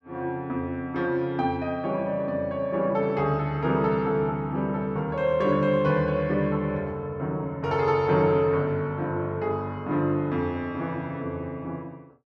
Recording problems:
none

